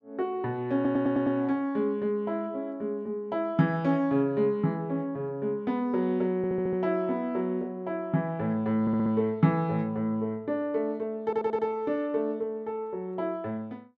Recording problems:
stutter; 4 times, first at 1 s

